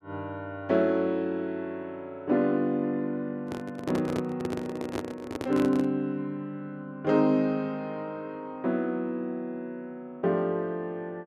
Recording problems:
handling noise; from 3.5 to 6 s; peak +2 dB vs average level

